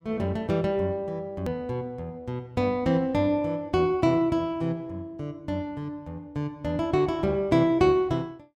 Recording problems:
hard cut with a click; at 1.5 s

